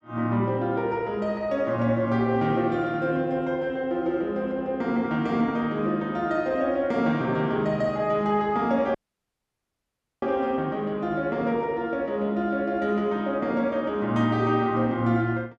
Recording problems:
audio cutting out; at 9 s for 1.5 s

